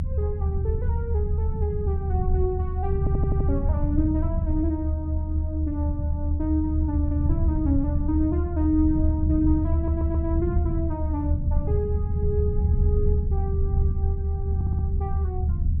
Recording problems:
low-frequency rumble; below 82 Hz, strongest tone 76 Hz, SNR -4 dB
audio stuttering; at 3 s, at 10 s and at 15 s

